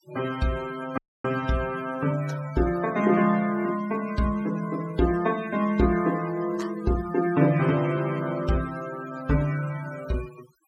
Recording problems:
denoising artefacts; signal-to-artefact ratio 17 dB
dropout; at 1 s

